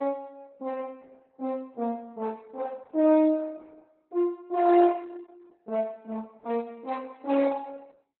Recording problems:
lossy compression; Opus, log-spectral distance 3 dB, nothing above 4 kHz

